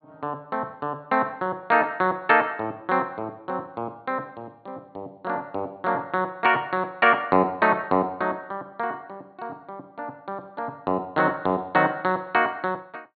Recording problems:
treble cut off; nothing above 4.5 kHz

